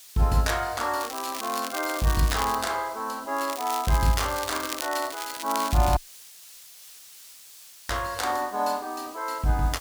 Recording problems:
background hiss; slope +4 dB per octave, SNR 18 dB
crackling; from 1 to 2.5 s and from 3.5 to 6 s; loose cable, SNR 8 dB
audio cutting out; at 6 s for 2 s

